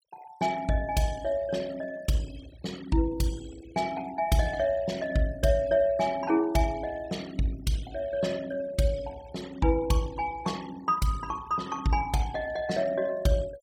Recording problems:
noise reduction artefacts; signal-to-artefact ratio 19 dB

